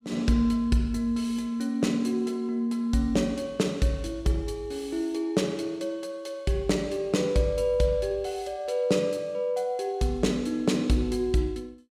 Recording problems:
none

